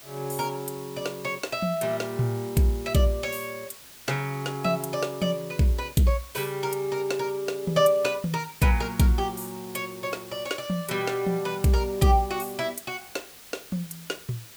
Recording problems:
background hiss; slope 0 dB per octave, SNR 17 dB

